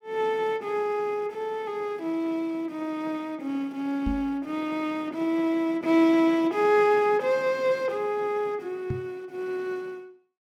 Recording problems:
microphone bump; at 4 s and at 9 s; peak -1 dB vs average level

